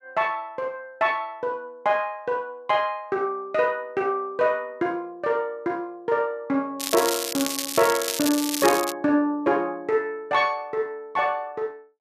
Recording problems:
crackle; from 7 to 9 s; loose cable, SNR 3 dB

